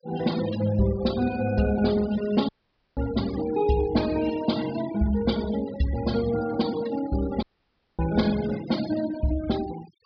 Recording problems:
treble cut off; nothing above 5.5 kHz
noise reduction artefacts; signal-to-artefact ratio 15 dB
dropout; at 2.5 s and at 7.5 s for 0.5 s

